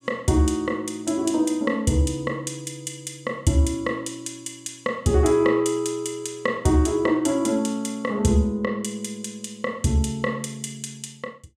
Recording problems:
none

